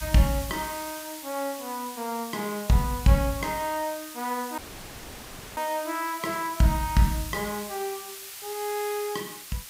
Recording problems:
background hiss; slope +3 dB per octave, SNR 10 dB
dropout; at 4.5 s for 1 s

